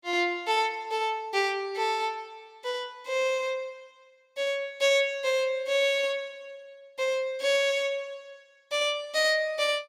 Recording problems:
none

